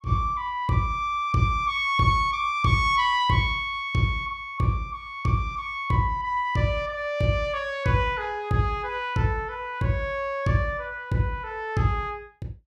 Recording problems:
none

